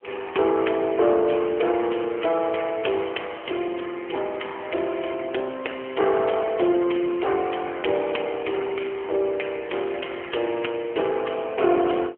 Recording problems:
phone line; 300 Hz to 3.2 kHz, AMR-NB

